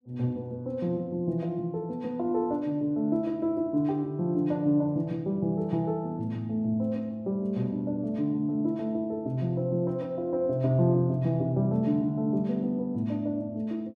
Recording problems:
none

